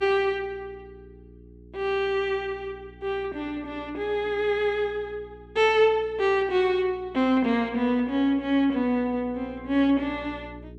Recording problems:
hum; 60 Hz, harmonics up to 420 Hz, SNR 23 dB

